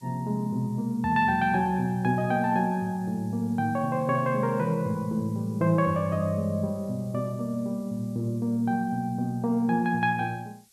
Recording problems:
hiss; SNR 29 dB

